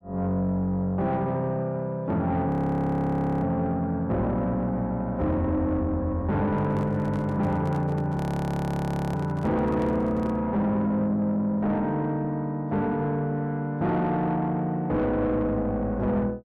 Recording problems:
distortion; soft clipping, signal-to-distortion ratio 11 dB
audio freezing; at 2.5 s for 1 s and at 8 s for 1 s
microphone handling noise; from 6.5 to 10 s; peak -9 dB vs average level

